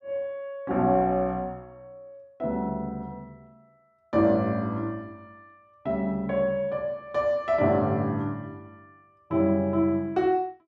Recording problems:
none

